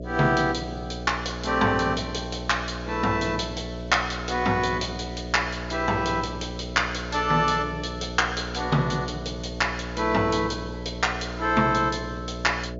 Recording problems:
treble cut off; nothing above 7.2 kHz
hum; 60 Hz, harmonics up to 660 Hz, SNR 9 dB

